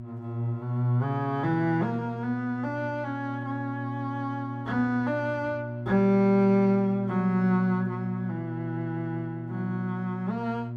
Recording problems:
electrical hum; 60 Hz, harmonics up to 600 Hz, SNR 8 dB

